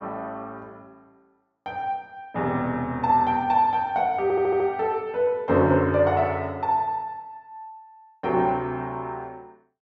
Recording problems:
treble cut off; nothing above 8 kHz
audio stuttering; at 4 s

